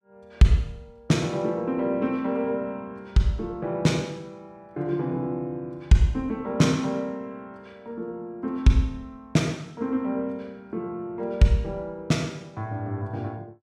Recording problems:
none

